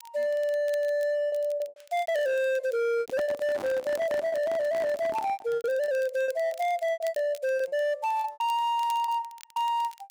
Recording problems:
distorted audio; hard clipping, signal-to-distortion ratio 10 dB
crackling; vinyl, SNR 25 dB
lost packets; 12% of the sound replaced, filled with repeated pitch periods
handling noise; from 3 to 5.5 s; peak -4 dB vs average level

